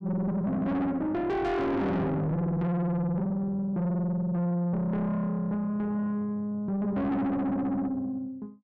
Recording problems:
distorted audio; soft clipping, signal-to-distortion ratio 6 dB

